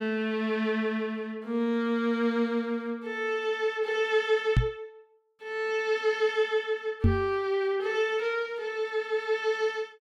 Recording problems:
microphone bump; at 4.5 s and at 7 s; peak +9 dB vs average level

